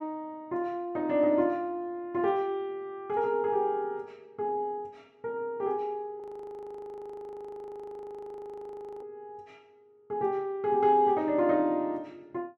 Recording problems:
audio freezing; at 6 s for 3 s

